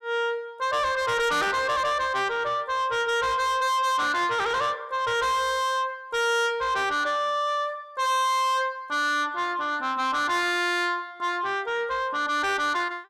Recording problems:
distortion; soft clipping, signal-to-distortion ratio 6 dB

